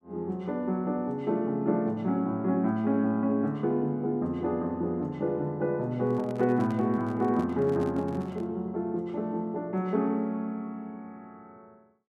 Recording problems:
microphone handling noise; from 6 to 8.5 s; peak -10 dB vs average level

